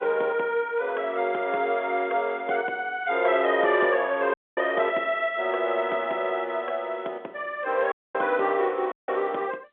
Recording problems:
phone line; 300 Hz to 3.5 kHz, G.711
dropout; at 4.5 s, at 8 s and at 9 s

